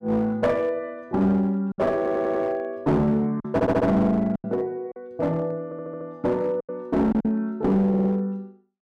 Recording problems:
distorted audio; hard clipping, uneven, signal-to-distortion ratio 11 dB
packet loss; 5% of the sound replaced, filled with silence
audio stuttering; 4 times, first at 2 s

